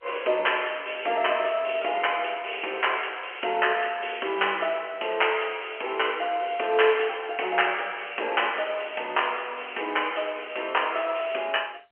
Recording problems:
phone line; 320 Hz to 3.1 kHz, G.711

